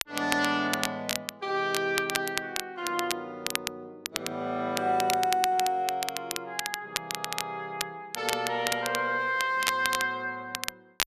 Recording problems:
crackling; vinyl, SNR 4 dB

